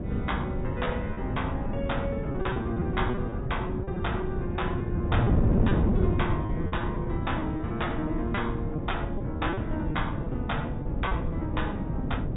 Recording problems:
treble cut off; nothing above 4 kHz
wind noise; below 220 Hz, SNR -3 dB
lost packets; 9% of the sound replaced, filled with repeated pitch periods

